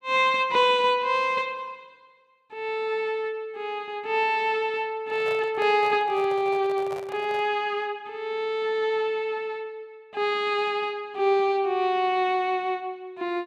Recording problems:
microphone handling noise; from 5 to 7.5 s; peak -10 dB vs average level

